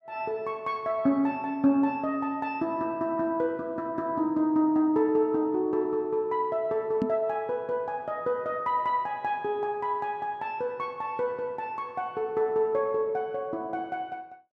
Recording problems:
microphone bump; at 7 s; peak +3 dB vs average level

